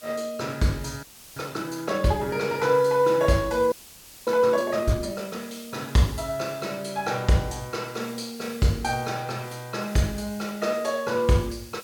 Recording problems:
background hiss; SNR 20 dB
frozen audio; at 1 s and at 3.5 s for 0.5 s

